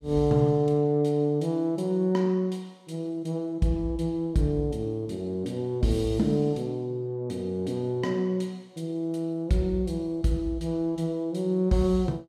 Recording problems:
none

